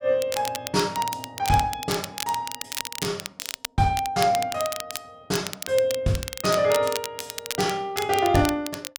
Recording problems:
crackle; vinyl, SNR 8 dB

